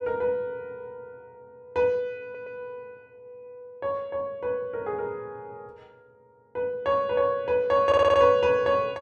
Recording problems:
stutter; at 2 s and at 8 s

